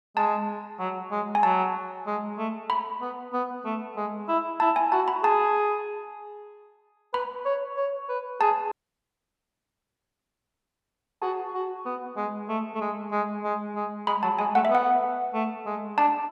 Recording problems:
dropout; at 8.5 s for 2.5 s

